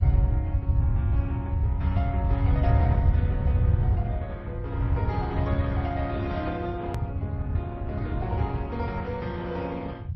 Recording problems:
lossy codec; Opus, then MP3, log-spectral distance 2 dB, nothing above 13.1 kHz
rumble; below 110 Hz, SNR -7 dB
click at an edit; at 7 s

